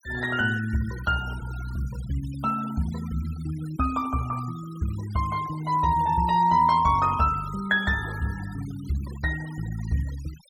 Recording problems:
denoising artefacts; signal-to-artefact ratio 19 dB

